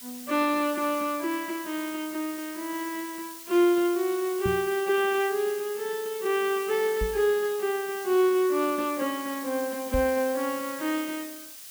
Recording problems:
background hiss; slope +3 dB per octave, SNR 13 dB
knock on the microphone; at 4.5 s, at 7 s and at 10 s; peak 0 dB vs average level

